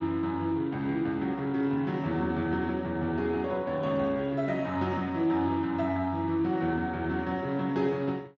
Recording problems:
lossy compression; Speex, log-spectral distance 2 dB

